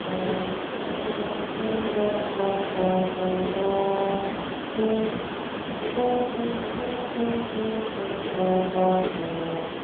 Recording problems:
telephone audio; 130 Hz to 3.6 kHz, AMR-NB
background hiss; SNR 4 dB

